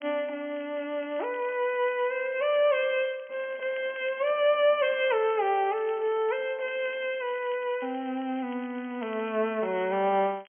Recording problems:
treble missing; nothing above 3.2 kHz
crackling; vinyl, SNR 27 dB

